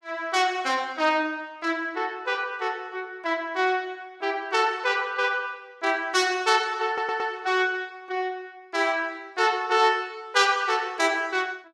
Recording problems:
stutter; at 7 s

